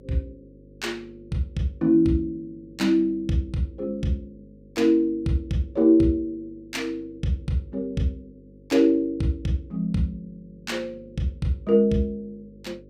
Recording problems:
hum; 50 Hz, harmonics up to 550 Hz, SNR 25 dB

